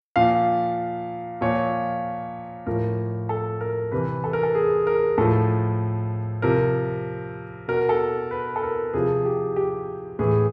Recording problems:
none

